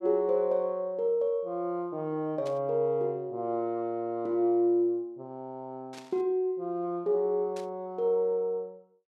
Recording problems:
static burst; at 2.5 s, at 6 s and at 7.5 s; peak -13 dB vs average level

